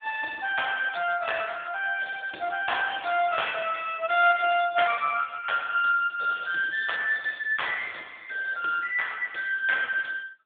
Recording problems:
phone line; 320 Hz to 3.5 kHz, AMR-NB

